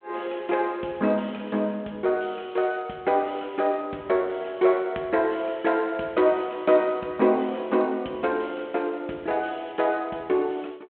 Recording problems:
phone line; 240 Hz to 3.6 kHz, G.726

